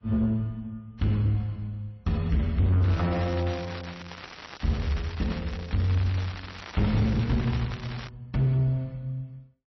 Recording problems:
codec artefacts; MP3, then AAC, log-spectral distance 4 dB, nothing above 5.8 kHz
distortion; soft clipping, signal-to-distortion ratio 11 dB
crackle; from 3 to 8 s; loose cable, SNR 14 dB

